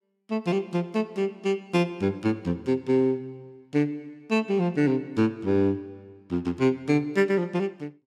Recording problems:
none

